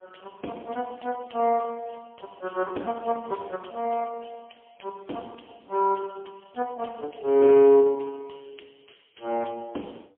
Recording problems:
phone line; 240 Hz to 2.9 kHz, AMR-NB, then MP3

